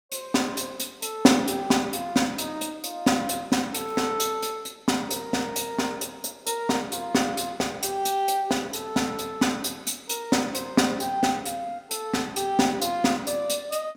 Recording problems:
crackling; at 4 s; loose cable, SNR 26 dB

